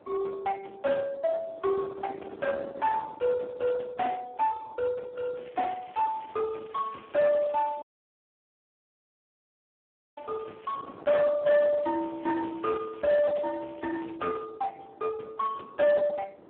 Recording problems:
telephone audio; 240 Hz to 2.4 kHz, Speex
distorted audio; soft clipping, signal-to-distortion ratio 11 dB
wind noise; below 1 kHz, SNR 18 dB
crackle; from 5.5 to 11 s and from 11 to 14 s; loose cable, SNR 27 dB
dropout; at 8 s for 2.5 s

